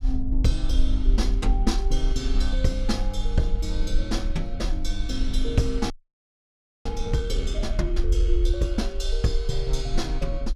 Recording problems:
low-frequency rumble; below 46 Hz, SNR -1 dB
audio freezing; at 6 s for 1 s

